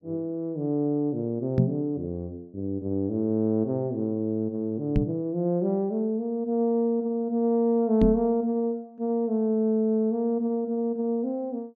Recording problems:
knock on the microphone; at 1.5 s, at 5 s and at 8 s; peak +7 dB vs average level

